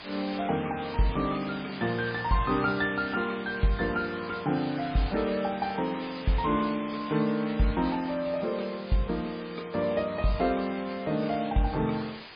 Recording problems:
lossy codec; MP3, log-spectral distance 15 dB, nothing above 4.8 kHz
hiss; SNR 13 dB

